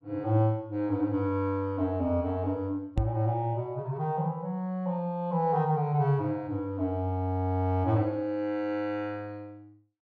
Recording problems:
microphone thump; at 3 s; peak +5 dB vs average level

